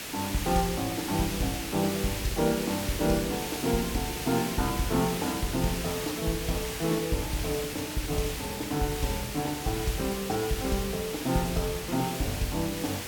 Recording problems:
hiss; slope -1 dB per octave, SNR 5 dB

